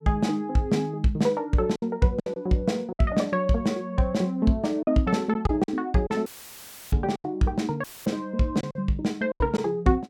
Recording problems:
packet loss; 6% of the sound replaced, filled with silence
dropout; at 6.5 s for 0.5 s and at 8 s; filled with static

